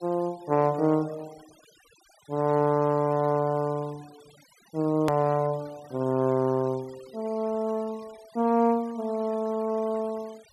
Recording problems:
noise reduction artefacts; signal-to-artefact ratio 25 dB
edit click; at 5 s

